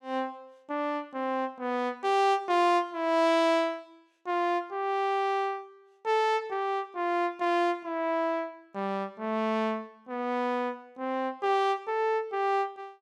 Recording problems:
none

